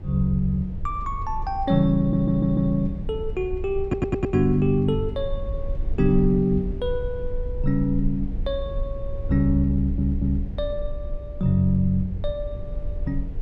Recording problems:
rumble; below 62 Hz, SNR 9 dB
stutter; at 2 s, at 4 s and at 10 s

